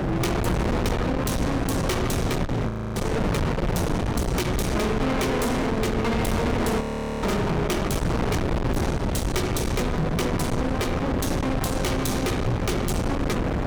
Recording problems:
distorted audio; soft clipping, signal-to-distortion ratio 6 dB
hum; 60 Hz, harmonics up to 660 Hz, SNR 14 dB
wind on the microphone; below 790 Hz, SNR 0 dB
audio freezing; at 2.5 s and at 7 s

